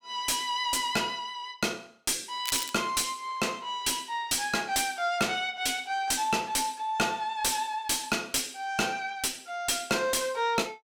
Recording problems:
distortion; soft clipping, signal-to-distortion ratio 6 dB
crackle; at 2.5 s; loose cable, SNR 8 dB

